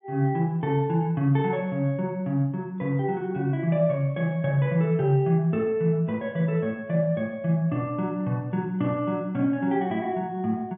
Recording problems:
low-pass filter; nothing above 3.5 kHz

